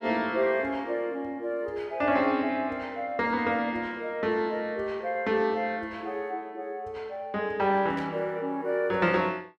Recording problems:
static burst; at 8 s; peak -12 dB vs average level

